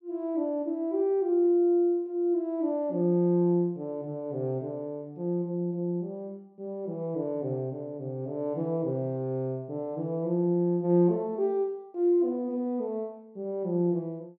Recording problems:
none

